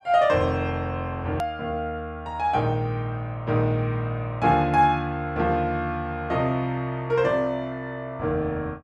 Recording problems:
click at an edit; at 1.5 s

